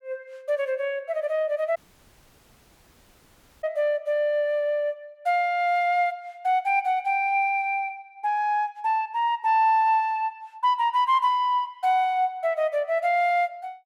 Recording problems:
dropout; at 2 s for 2 s

